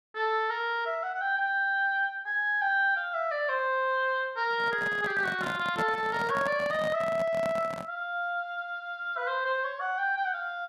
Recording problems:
microphone handling noise; from 4.5 to 8 s; peak -3 dB vs average level

